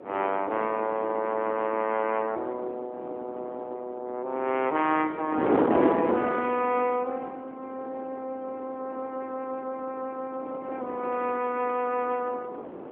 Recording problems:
phone line; 260 Hz to 3.3 kHz, AMR-NB
wind noise; below 690 Hz, SNR 3 dB

